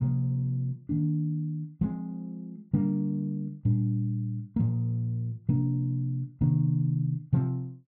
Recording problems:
treble missing; nothing above 4.5 kHz

